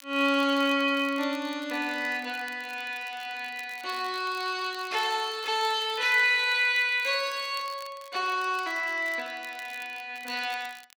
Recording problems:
crackling; vinyl, SNR 22 dB

